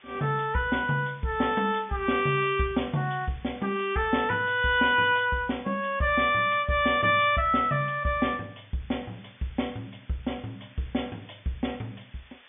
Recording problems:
treble cut off; nothing above 3.5 kHz
hiss; SNR 27 dB

